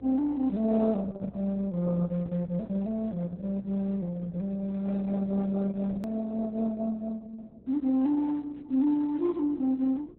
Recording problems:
lossy compression; Opus, log-spectral distance 2 dB, nothing above 18.3 kHz
hum; 60 Hz, harmonics up to 540 Hz, SNR 25 dB
edit click; at 6 s

